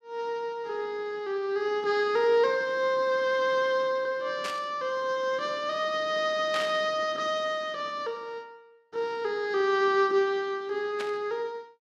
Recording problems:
static burst; at 4.5 s, at 6.5 s and at 11 s; peak -3 dB vs average level

